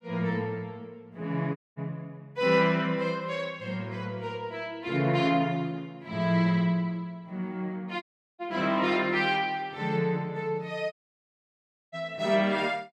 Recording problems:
audio cutting out; at 1.5 s, at 8 s and at 11 s for 1 s

